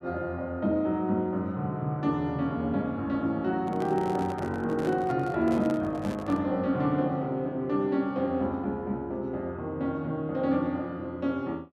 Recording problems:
handling noise; from 3.5 to 6.5 s; peak -5 dB vs average level

